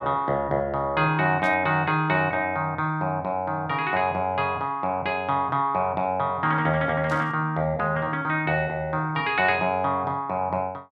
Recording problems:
burst of static; at 1.5 s and at 7 s; peak -15 dB vs average level

